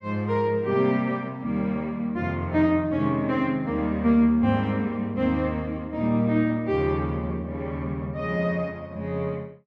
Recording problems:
none

